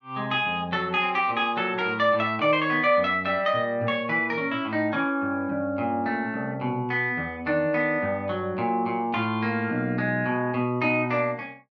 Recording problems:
none

